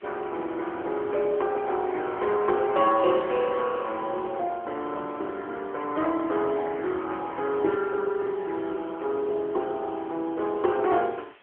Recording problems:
phone line; 280 Hz to 3.4 kHz, AMR-NB
hiss; SNR 27 dB

